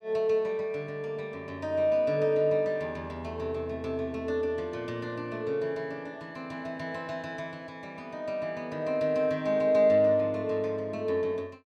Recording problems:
none

